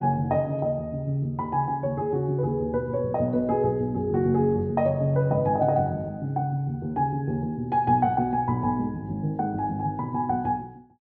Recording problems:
none

